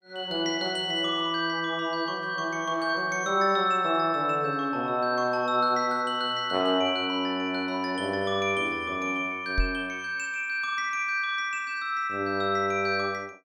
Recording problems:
microphone thump; at 9.5 s; peak +2 dB vs average level

